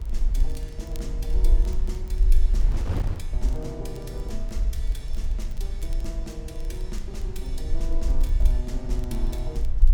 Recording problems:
rumble; below 46 Hz, SNR -10 dB
wind noise; below 120 Hz, SNR 0 dB
crackle; vinyl, SNR 17 dB

